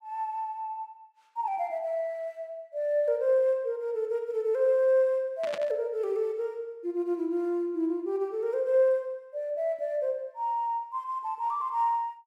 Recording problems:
burst of static; at 5.5 s; peak -5 dB vs average level

